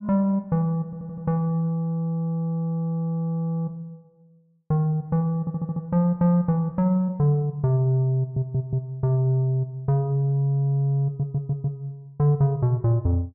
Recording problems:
audio stuttering; 4 times, first at 1 s

